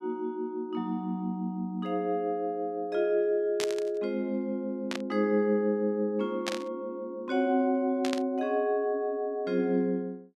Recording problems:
burst of static; 4 times, first at 3.5 s; peak +1 dB vs average level

